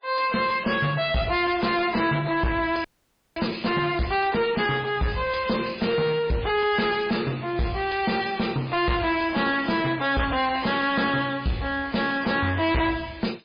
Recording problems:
codec artefacts; MP3, log-spectral distance 6 dB, nothing above 4.2 kHz
distorted audio; soft clipping, signal-to-distortion ratio 7 dB
audio freezing; at 3 s for 0.5 s
crackling; at 8.5 s; loose cable, SNR 27 dB

